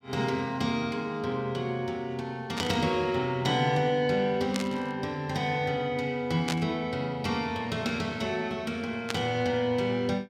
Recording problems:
burst of static; 4 times, first at 2.5 s; peak +1 dB vs average level

